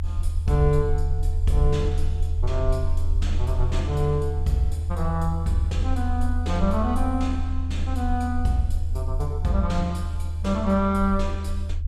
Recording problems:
rumble; below 80 Hz, SNR 0 dB

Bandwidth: 14.5 kHz